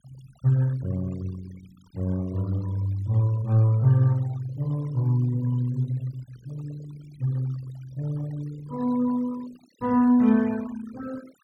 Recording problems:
denoising artefacts; signal-to-artefact ratio 23 dB

